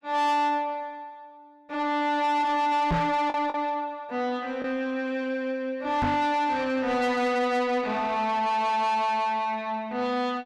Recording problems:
distorted audio; soft clipping, signal-to-distortion ratio 10 dB
lost packets; 1% of the sound replaced, filled with the last packet
microphone bump; at 3 s and at 6 s; peak +4 dB vs average level

